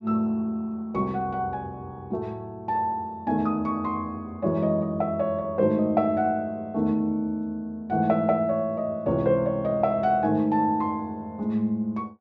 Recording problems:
low-pass filter; nothing above 8 kHz

